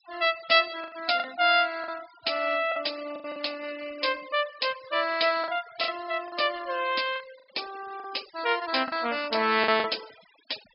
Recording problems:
low-pass filter; nothing above 5.2 kHz
denoising artefacts; signal-to-artefact ratio 17 dB
packet loss; 6% of the sound replaced, filled with the last packet

